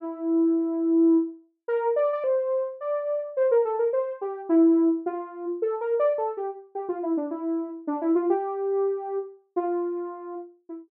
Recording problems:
none

